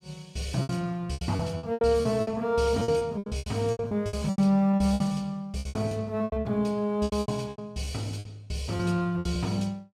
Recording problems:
lost packets; 19% of the sound replaced, filled with repeated pitch periods

